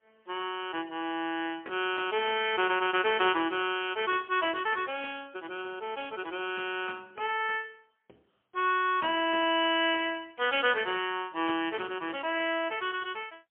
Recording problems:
telephone audio; 280 Hz to 3.3 kHz, AMR-NB, then MP3

